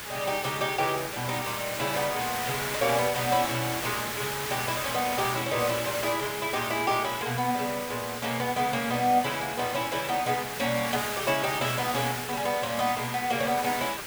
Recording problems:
hiss; SNR 5 dB

